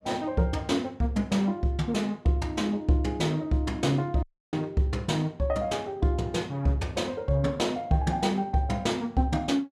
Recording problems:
audio cutting out; at 4 s

